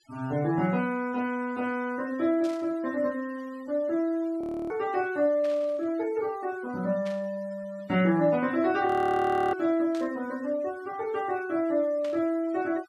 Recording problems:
noise reduction artefacts; signal-to-artefact ratio 23 dB
static burst; 5 times, first at 2.5 s; peak -13 dB vs average level
audio freezing; at 4.5 s and at 9 s for 0.5 s

